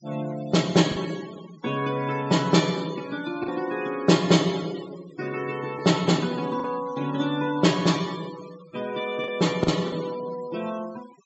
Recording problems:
treble cut off; nothing above 7.8 kHz
noise reduction artefacts; signal-to-artefact ratio 18 dB
packet loss; 2% of the sound replaced, filled with the last packet

